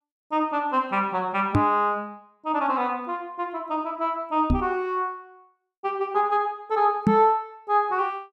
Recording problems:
microphone thump; at 1.5 s, at 4.5 s and at 7 s; peak +8 dB vs average level

